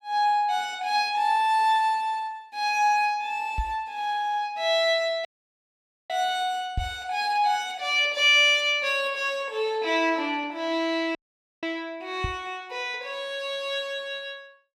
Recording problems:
microphone bump; at 3.5 s, at 7 s and at 12 s; peak -1 dB vs average level
dropout; at 5.5 s for 1 s and at 11 s

